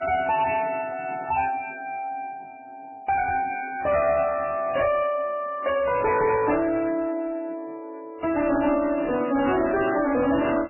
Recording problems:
codec artefacts; MP3, then MP3, log-spectral distance 3 dB, nothing above 2.5 kHz
distortion; soft clipping, signal-to-distortion ratio 10 dB

